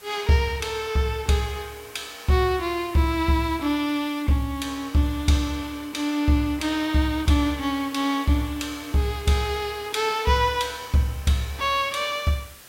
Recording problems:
background hiss; slope -1 dB per octave, SNR 21 dB

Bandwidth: 16 kHz